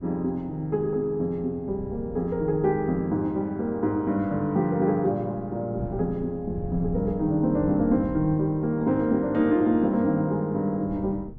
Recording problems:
wind on the microphone; below 170 Hz, SNR 15 dB

